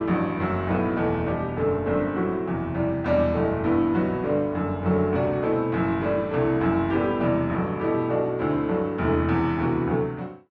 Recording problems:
none

